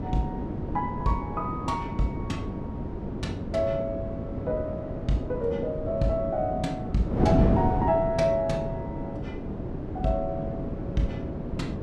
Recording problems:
wind on the microphone; below 350 Hz, SNR 2 dB

